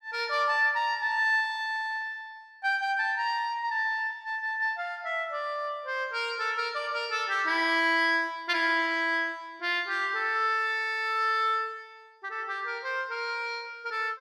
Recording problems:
none

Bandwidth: 14.5 kHz